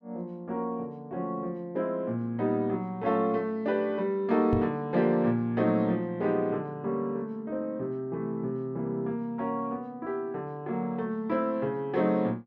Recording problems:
knock on the microphone; at 4.5 s; peak +3 dB vs average level

